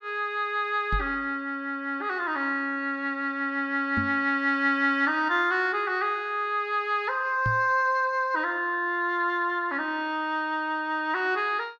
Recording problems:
microphone thump; at 1 s, at 4 s and at 7.5 s; peak 0 dB vs average level

